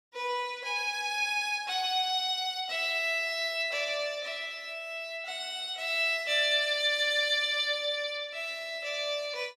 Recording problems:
none

